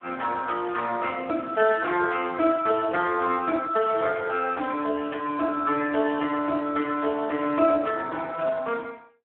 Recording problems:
phone line; 190 Hz to 2.8 kHz, Speex

